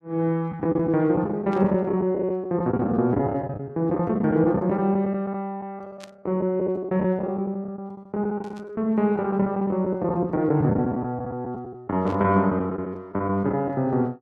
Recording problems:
packet loss; 12% of the sound replaced, filled with the last packet
static burst; 4 times, first at 1.5 s; peak -14 dB vs average level

